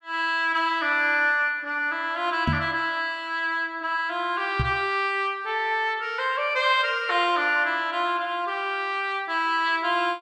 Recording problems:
microphone thump; at 2.5 s and at 4.5 s; peak +3 dB vs average level

